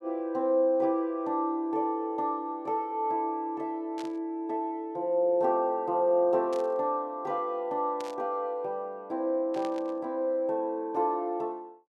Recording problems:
static burst; 4 times, first at 4 s; peak -11 dB vs average level

